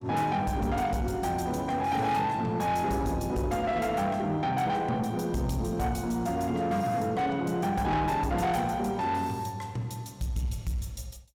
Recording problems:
distorted audio; soft clipping, signal-to-distortion ratio 11 dB

